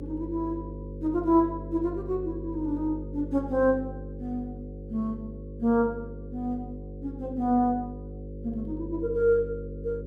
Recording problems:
electrical hum; 50 Hz, harmonics up to 550 Hz, SNR 10 dB

